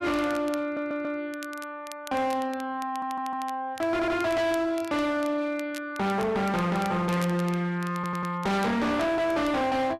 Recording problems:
distortion; hard clipping, signal-to-distortion ratio 7 dB
crackle; vinyl, SNR 20 dB
stutter; 4 times, first at 0.5 s

